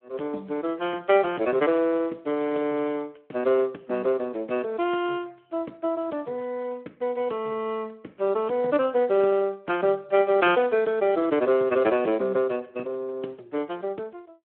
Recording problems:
telephone audio; 240 Hz to 3.1 kHz, Speex

